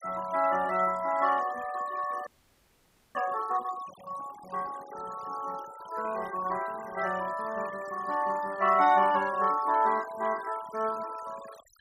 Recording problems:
denoising artefacts; signal-to-artefact ratio 19 dB
frozen audio; at 2.5 s for 1 s

